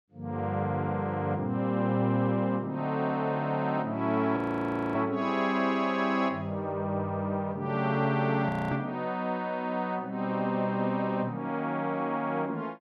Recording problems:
audio freezing; at 4.5 s for 0.5 s and at 8.5 s

